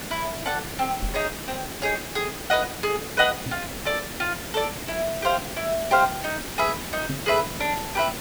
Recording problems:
background hiss; slope -3 dB per octave, SNR 7 dB
knock on the microphone; at 1 s, at 3.5 s and at 7 s; peak -1 dB vs average level

